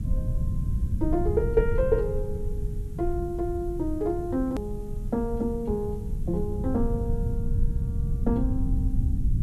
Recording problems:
background hiss; slope -1 dB per octave, SNR 30 dB
low-frequency rumble; below 110 Hz, SNR 1 dB
hard cut with a click; at 4.5 s

